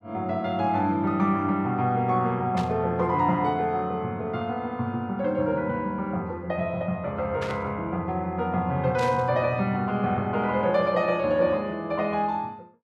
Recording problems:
static burst; at 2.5 s, at 7.5 s and at 9 s; peak -7 dB vs average level

